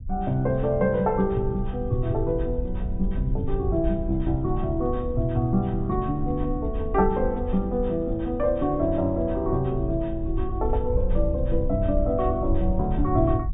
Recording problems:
treble cut off; nothing above 4 kHz
low-frequency rumble; below 68 Hz, SNR 6 dB

